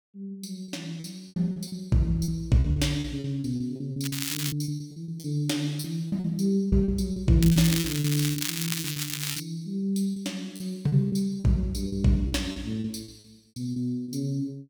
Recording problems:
packet loss; 14% of the sound replaced, filled with repeated pitch periods
crackle; at 4 s and from 7.5 to 9.5 s; loose cable, SNR 3 dB

